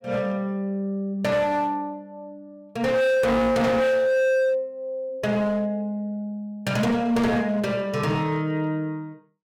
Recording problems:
distortion; hard clipping, signal-to-distortion ratio 6 dB

